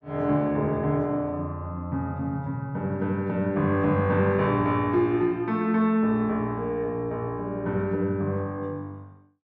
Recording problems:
none

